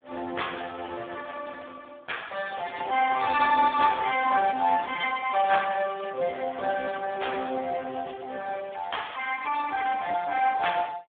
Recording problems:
phone line; 170 Hz to 3.5 kHz, Speex

